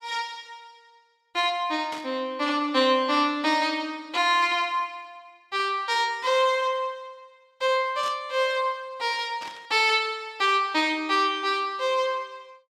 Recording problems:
static burst; at 2 s, at 8 s and at 9.5 s; peak -10 dB vs average level

